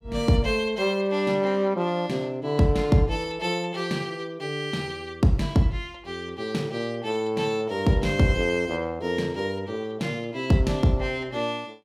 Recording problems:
none

